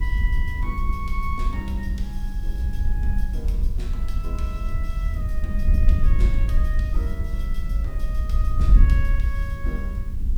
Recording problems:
background hiss; slope -1 dB per octave, SNR 20 dB
wind on the microphone; below 60 Hz, SNR -10 dB

